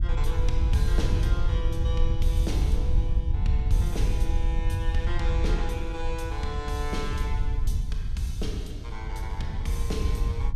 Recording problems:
wind noise; below 72 Hz, SNR -7 dB

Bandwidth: 14.5 kHz